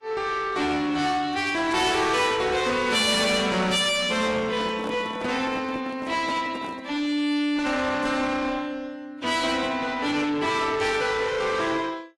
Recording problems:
lossy codec; AAC, log-spectral distance 4 dB, nothing above 11 kHz
distorted audio; soft clipping, signal-to-distortion ratio 6 dB
handling noise; from 4 to 7 s; peak -5 dB vs average level

